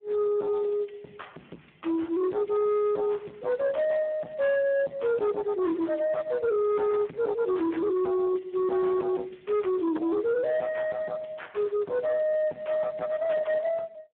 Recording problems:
telephone audio; 220 Hz to 2.7 kHz, Speex
distorted audio; soft clipping, signal-to-distortion ratio 9 dB

